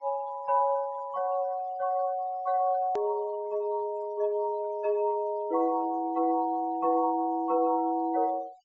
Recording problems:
treble missing; nothing above 8 kHz
denoising artefacts; signal-to-artefact ratio 26 dB
hard cut with a click; at 3 s

